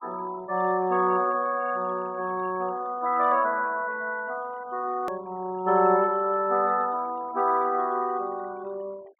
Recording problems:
treble cut off; nothing above 4 kHz
noise reduction artefacts; signal-to-artefact ratio 25 dB
click at an edit; at 5 s

